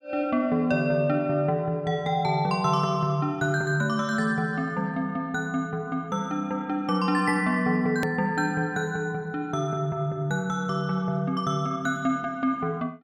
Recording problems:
click at an edit; at 8 s

